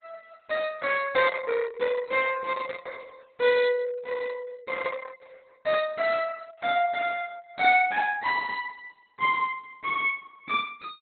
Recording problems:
lossy compression; Opus, log-spectral distance 4 dB, nothing above 4 kHz

